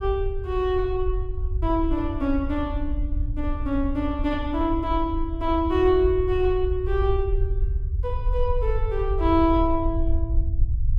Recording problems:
low-frequency rumble; below 68 Hz, SNR 4 dB

